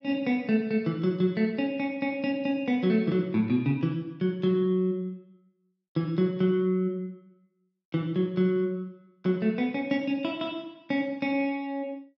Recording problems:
none

